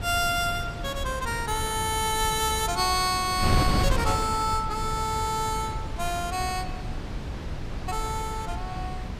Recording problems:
wind noise; below 250 Hz, SNR 5 dB

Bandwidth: 15.5 kHz